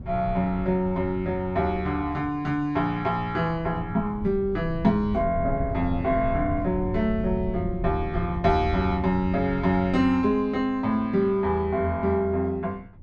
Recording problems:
wind on the microphone; below 130 Hz, SNR 11 dB

